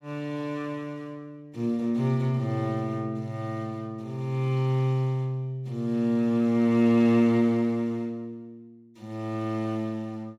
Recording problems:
none

